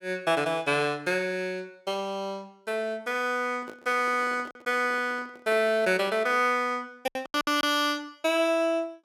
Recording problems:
lost packets; 3% of the sound replaced, filled with silence
microphone handling noise; from 3.5 to 6.5 s; peak -11 dB vs average level

